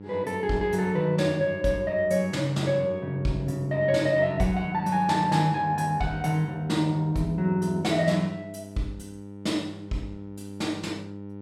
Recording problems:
hum; 50 Hz, harmonics up to 900 Hz, SNR 15 dB

